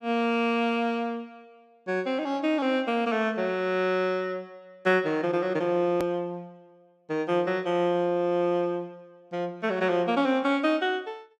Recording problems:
edit click; at 6 s

